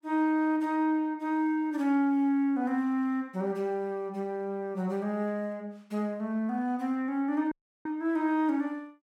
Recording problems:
dropout; at 7.5 s

